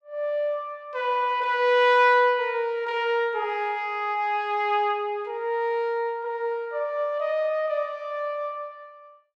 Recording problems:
none

